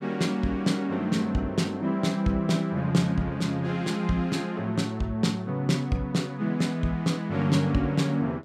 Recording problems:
none

